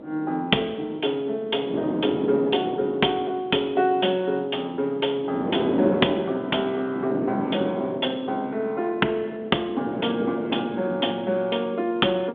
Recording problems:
telephone audio; 220 Hz to 3.5 kHz, G.726
wind noise; below 490 Hz, SNR 6 dB

